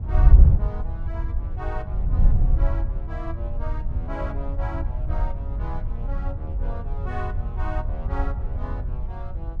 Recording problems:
wind on the microphone; below 76 Hz, SNR -12 dB

